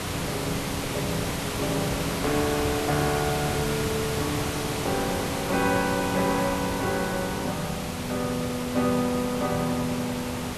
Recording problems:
background hiss; slope -3 dB per octave, SNR 2 dB

